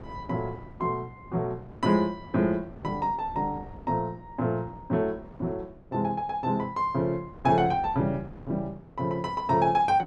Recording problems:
wind noise; below 400 Hz, SNR 19 dB

